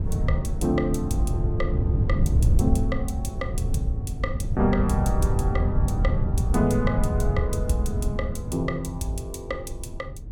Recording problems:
wind on the microphone; below 110 Hz, SNR -2 dB

